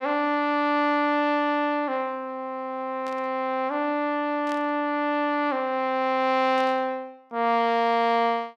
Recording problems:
burst of static; at 3 s, at 4.5 s and at 6.5 s; peak -13 dB vs average level

